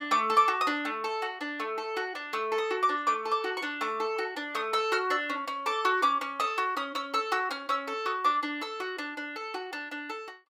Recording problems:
none

